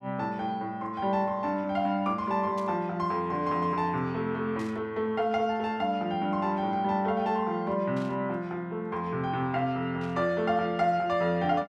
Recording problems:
static burst; 4 times, first at 2.5 s; peak -15 dB vs average level

